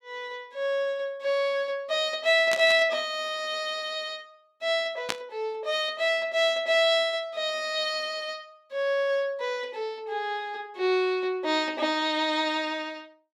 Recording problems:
burst of static; at 2.5 s and at 5 s; peak +2 dB vs average level

